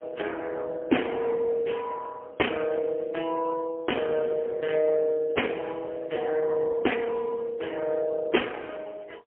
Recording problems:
phone line; 260 Hz to 3.2 kHz, AMR-NB, then MP3

